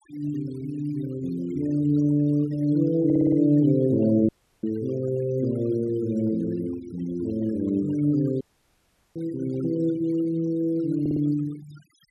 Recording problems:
denoising artefacts; signal-to-artefact ratio 22 dB
stutter; at 3 s and at 11 s
audio cutting out; at 4.5 s and at 8.5 s for 0.5 s

